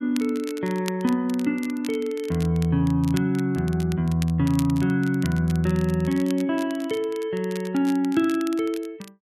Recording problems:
crackling; vinyl, SNR 19 dB

